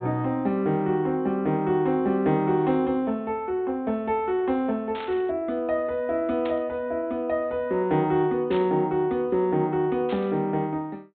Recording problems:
treble cut off; nothing above 4 kHz
burst of static; 4 times, first at 5 s; peak -9 dB vs average level

